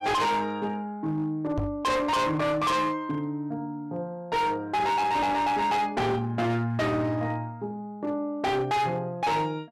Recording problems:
distortion; hard clipping, signal-to-distortion ratio 6 dB
microphone thump; at 1.5 s; peak 0 dB vs average level

